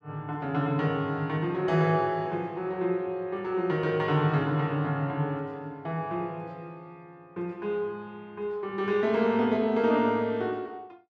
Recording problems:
none

